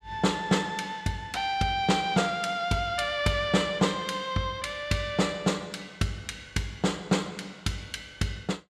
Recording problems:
none

